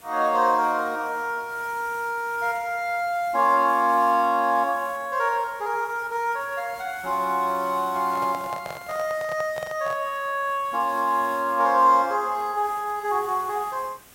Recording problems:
background hiss; slope -3 dB per octave, SNR 23 dB
microphone handling noise; from 8 to 10 s; peak -7 dB vs average level

